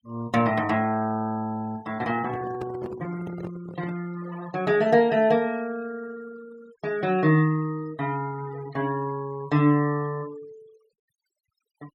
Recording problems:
noise reduction artefacts; signal-to-artefact ratio 24 dB
handling noise; from 2 to 4 s; peak -7 dB vs average level

